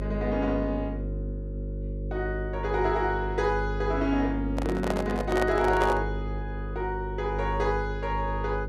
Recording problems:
hum; 50 Hz, harmonics up to 550 Hz, SNR 5 dB
microphone handling noise; from 4.5 to 6 s; peak +3 dB vs average level

